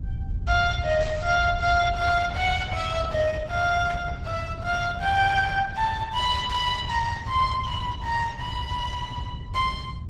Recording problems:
codec artefacts; Vorbis, then Opus, log-spectral distance 3 dB
low-frequency rumble; below 100 Hz, SNR 6 dB
static burst; at 1 s, at 4 s and at 6.5 s; peak -10 dB vs average level

